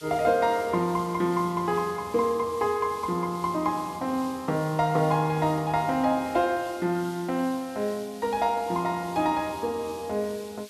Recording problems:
background hiss; slope +5 dB per octave, SNR 20 dB

